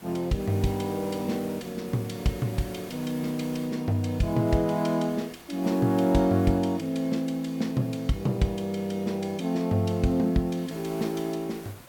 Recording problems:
hiss; slope -4 dB per octave, SNR 19 dB

